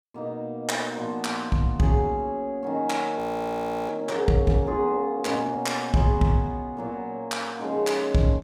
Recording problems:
audio freezing; at 3 s for 0.5 s

